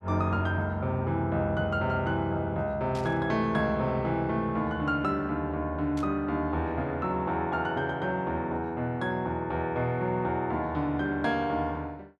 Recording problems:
burst of static; at 3 s and at 6 s; peak -12 dB vs average level

